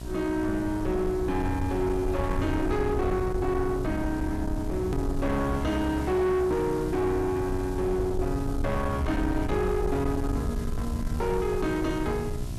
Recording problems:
distortion; soft clipping, signal-to-distortion ratio 11 dB
hum; 60 Hz, harmonics up to 1.4 kHz, SNR 12 dB
hiss; SNR 21 dB
low-frequency rumble; below 110 Hz, SNR 6 dB
hard cut with a click; at 5 s

